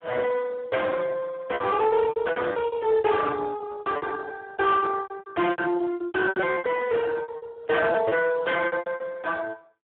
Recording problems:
phone line; 190 Hz to 3.5 kHz, Speex
distortion; soft clipping, signal-to-distortion ratio 10 dB
packet loss; 20% of the sound replaced, filled with repeated pitch periods

